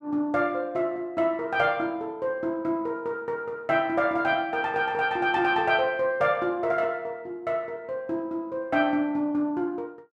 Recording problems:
none

